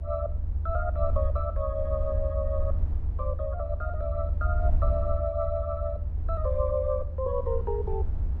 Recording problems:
low-frequency rumble; below 80 Hz, SNR -2 dB

